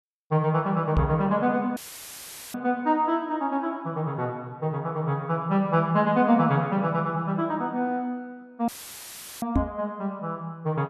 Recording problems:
microphone bump; at 1 s and at 9.5 s; peak +6 dB vs average level
dropout; at 2 s for 1 s and at 8.5 s for 0.5 s; filled with static

